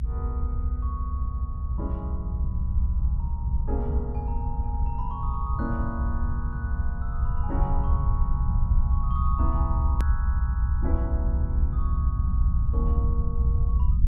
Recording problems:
rumble; below 72 Hz, SNR -10 dB
edit click; at 10 s

